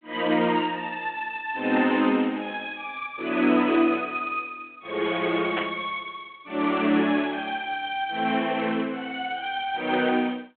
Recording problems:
telephone audio; 240 Hz to 3.5 kHz, G.726
burst of static; at 5.5 s; peak 0 dB vs average level

